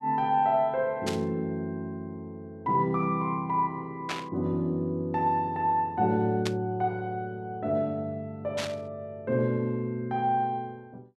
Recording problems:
burst of static; 4 times, first at 1 s; peak 0 dB vs average level

